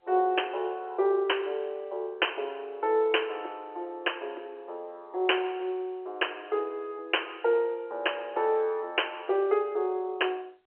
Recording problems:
phone line; 320 Hz to 3.2 kHz, G.711

